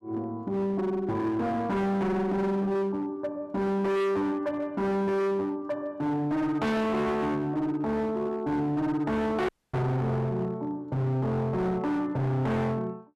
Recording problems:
distortion; hard clipping, signal-to-distortion ratio 7 dB
dropout; at 9.5 s

